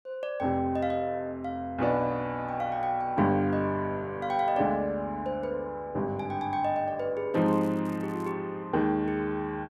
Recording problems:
crackle; from 7.5 to 8.5 s; loose cable, SNR 29 dB

